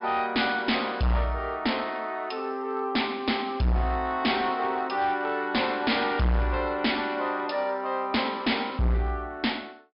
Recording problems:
treble missing; nothing above 5.5 kHz
distorted audio; hard clipping, uneven, signal-to-distortion ratio 7 dB

